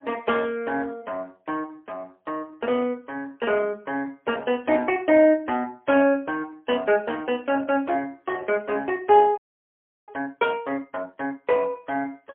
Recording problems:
phone line; 260 Hz to 3.3 kHz, AMR-NB, then MP3
frozen audio; at 9.5 s for 0.5 s

